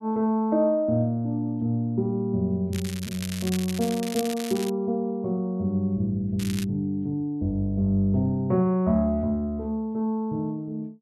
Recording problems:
crackling; from 2.5 to 4.5 s and at 6.5 s; loose cable, SNR 11 dB

